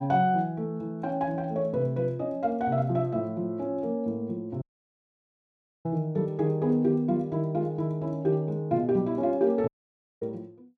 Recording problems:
audio cutting out; at 4.5 s for 1 s and at 9.5 s for 0.5 s

